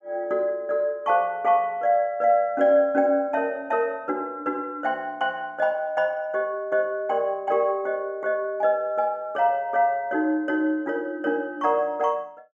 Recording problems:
none

